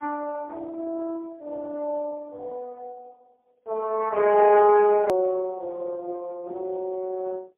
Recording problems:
phone line; 320 Hz to 3.1 kHz, AMR-NB, then MP3
hard cut with a click; at 5 s

